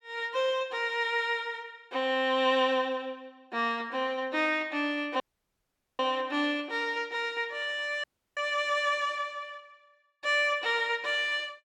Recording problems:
dropout; at 5 s for 1 s and at 8 s

